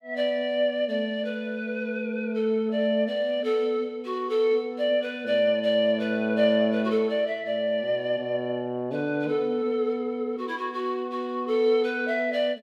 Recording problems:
none

